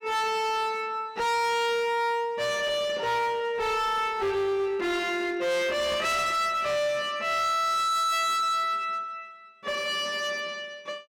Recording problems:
distorted audio; hard clipping, uneven, signal-to-distortion ratio 6 dB

